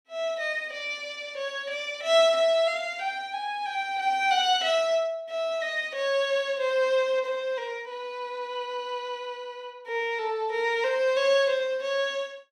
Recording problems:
none

